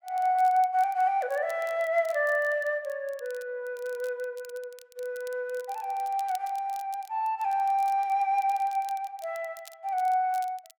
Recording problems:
crackling; vinyl, SNR 24 dB

